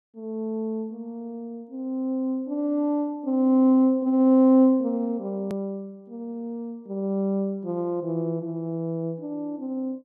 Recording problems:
hard cut with a click; at 5.5 s

